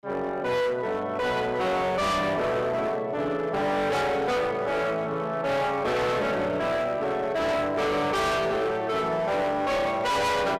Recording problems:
distortion; hard clipping, signal-to-distortion ratio 6 dB

